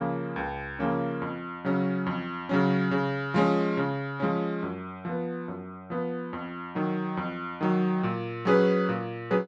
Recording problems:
none

